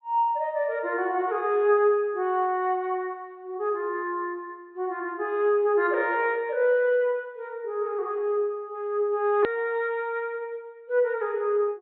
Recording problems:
treble cut off; nothing above 4.2 kHz
hard cut with a click; at 9.5 s

